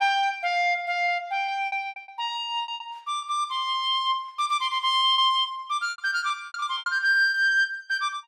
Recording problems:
packet loss; 11% of the sound replaced, filled with repeated pitch periods

